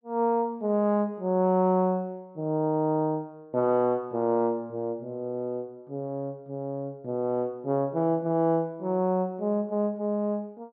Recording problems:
none

